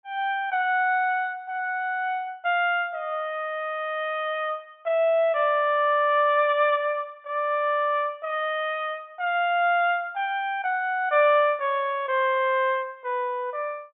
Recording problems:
treble missing; nothing above 3.6 kHz

